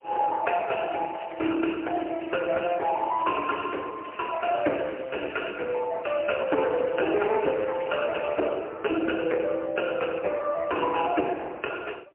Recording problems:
phone line; 280 Hz to 2.6 kHz, AMR-NB, then MP3
crackling; from 1 to 4 s, from 4 to 5.5 s and from 6 to 8.5 s; loose cable, SNR 20 dB

